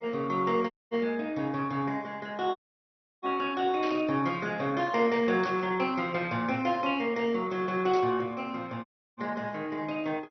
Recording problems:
codec artefacts; MP2, log-spectral distance 3 dB, nothing above 5.8 kHz
dropout; at 0.5 s, at 2.5 s for 0.5 s and at 9 s
static burst; at 4 s, at 5.5 s and at 8 s; peak -9 dB vs average level

